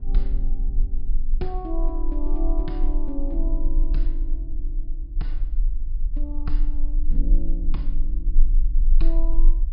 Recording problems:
treble cut off; nothing above 5.5 kHz
low-frequency rumble; below 34 Hz, strongest tone 18 Hz, SNR -9 dB
wind on the microphone; below 110 Hz, SNR 11 dB

